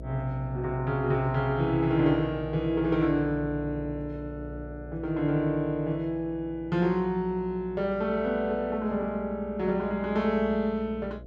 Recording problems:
hum; 60 Hz, harmonics up to 660 Hz, SNR 15 dB

